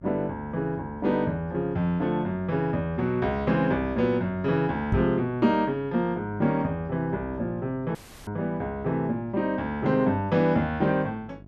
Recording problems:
hum; 50 Hz, harmonics up to 750 Hz, SNR 22 dB
microphone bump; at 5 s; peak +5 dB vs average level
audio cutting out; at 8 s

